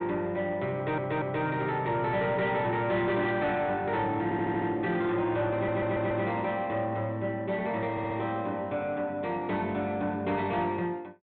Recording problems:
treble missing; nothing above 4 kHz
distorted audio; soft clipping, signal-to-distortion ratio 12 dB
audio stuttering; 4 times, first at 0.5 s

